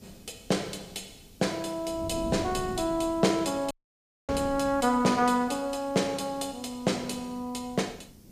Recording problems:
hiss; SNR 30 dB
wind on the microphone; below 270 Hz, SNR 16 dB
dropout; at 3.5 s for 0.5 s

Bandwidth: 15 kHz